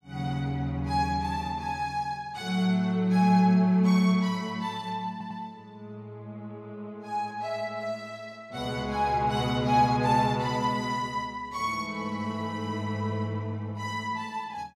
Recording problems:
stutter; at 5 s

